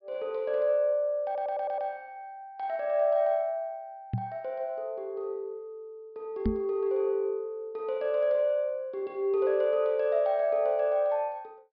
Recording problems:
low-pass filter; nothing above 5.5 kHz
audio stuttering; at 1.5 s
knock on the microphone; at 4 s and at 6.5 s; peak +4 dB vs average level

